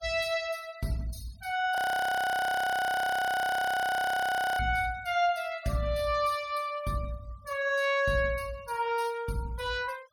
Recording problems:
noise reduction artefacts; signal-to-artefact ratio 23 dB
audio freezing; at 2 s for 3 s

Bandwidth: 17.5 kHz